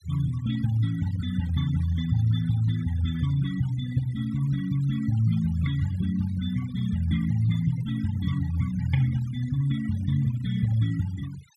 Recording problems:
denoising artefacts; signal-to-artefact ratio 20 dB

